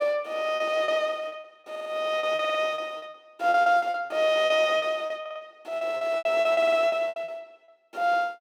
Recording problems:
lost packets; 17% of the sound replaced, filled with repeated pitch periods
stutter; 4 times, first at 1.5 s

